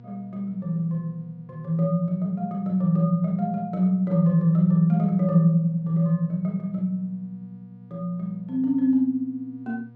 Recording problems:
hum; 60 Hz, harmonics up to 960 Hz, SNR 24 dB

